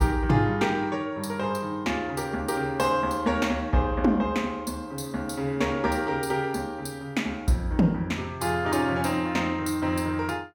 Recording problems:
none

